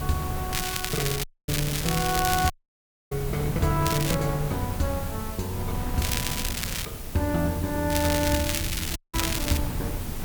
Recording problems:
background hiss; SNR 10 dB
low-frequency rumble; below 140 Hz, SNR 14 dB
wind noise; below 240 Hz, SNR 6 dB
crackling; 4 times, first at 0.5 s; loose cable, SNR 1 dB
dropout; at 1 s, at 2.5 s for 0.5 s and at 9 s

